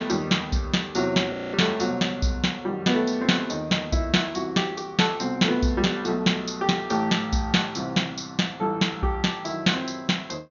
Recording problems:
treble cut off; nothing above 6.8 kHz
audio freezing; at 1.5 s

